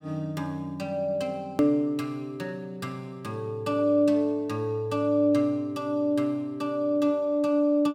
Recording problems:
hard cut with a click; at 1.5 s

